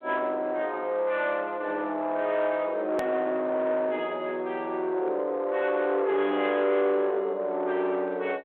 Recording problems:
telephone audio; 300 Hz to 3.7 kHz, G.726
distortion; soft clipping, signal-to-distortion ratio 12 dB
click at an edit; at 3 s

